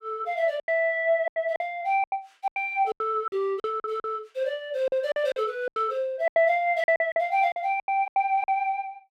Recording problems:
packet loss; 14% of the sound replaced, filled with silence

